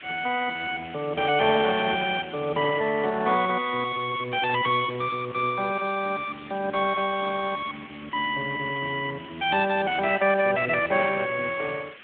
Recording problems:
telephone audio; 240 Hz to 3.3 kHz, Speex
background hiss; SNR 19 dB

